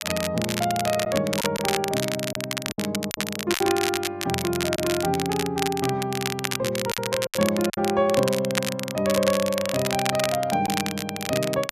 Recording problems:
crackle; vinyl, SNR 4 dB
lost packets; 4% of the sound replaced, filled with silence

